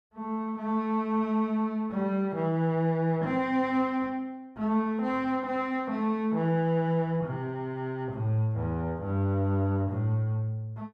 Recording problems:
none

